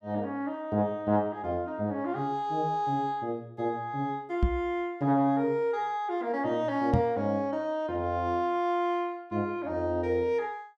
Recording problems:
knock on the microphone; at 4.5 s and at 7 s; peak +8 dB vs average level

